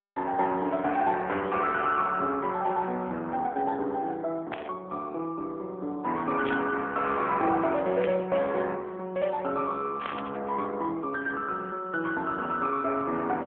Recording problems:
phone line; 220 Hz to 3.4 kHz, AMR-NB
burst of static; 4 times, first at 4.5 s; peak -1 dB vs average level

